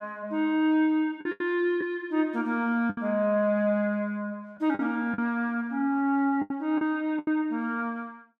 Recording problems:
packet loss; 6% of the sound replaced, filled with the last packet

